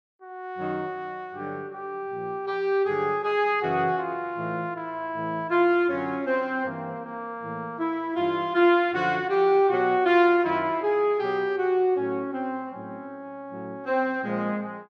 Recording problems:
none

